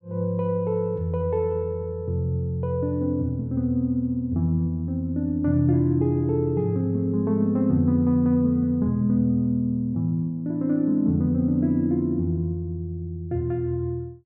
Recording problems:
none

